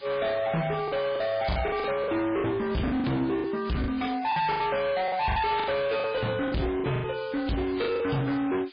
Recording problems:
codec artefacts; Vorbis, then MP3, log-spectral distance 5 dB, nothing above 4.4 kHz
distortion; hard clipping, uneven, signal-to-distortion ratio 7 dB
hiss; SNR 23 dB
packet loss; 12% of the sound replaced, filled with the last packet

